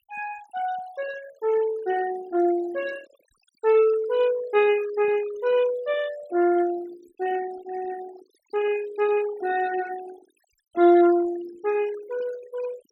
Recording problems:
noise reduction artefacts; signal-to-artefact ratio 17 dB

